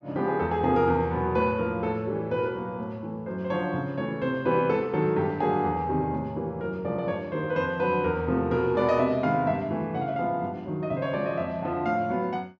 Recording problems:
low-pass filter; nothing above 8 kHz

